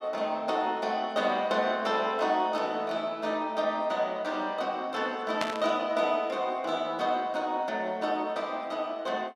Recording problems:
burst of static; at 5.5 s; peak +1 dB vs average level

